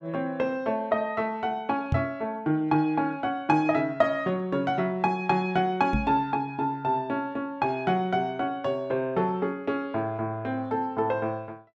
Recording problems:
microphone thump; at 2 s and at 6 s; peak +5 dB vs average level

